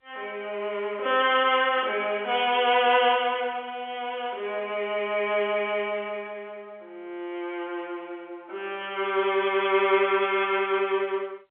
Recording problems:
phone line; 300 Hz to 3.4 kHz, G.711

